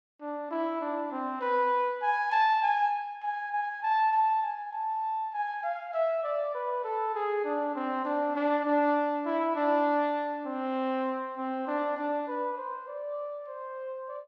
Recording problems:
none

